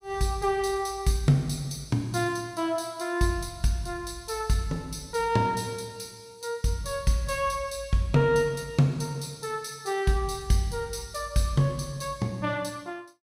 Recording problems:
none

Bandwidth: 15.5 kHz